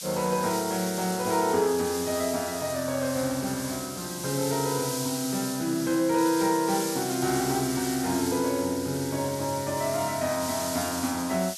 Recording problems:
hiss; slope +8 dB per octave, SNR 7 dB

